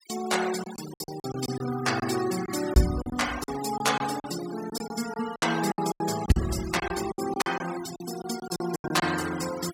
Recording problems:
denoising artefacts; signal-to-artefact ratio 10 dB
packet loss; 13% of the sound replaced, filled with silence

